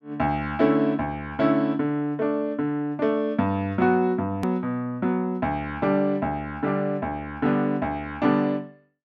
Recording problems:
hard cut with a click; at 4.5 s

